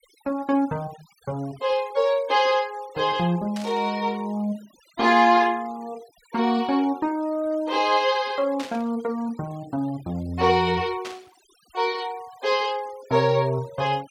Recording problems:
denoising artefacts; signal-to-artefact ratio 24 dB
static burst; at 3.5 s, at 8.5 s and at 11 s; peak -8 dB vs average level

